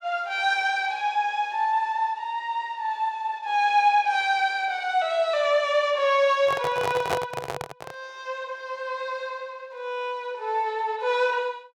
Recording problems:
handling noise; from 6.5 to 8 s; peak +2 dB vs average level

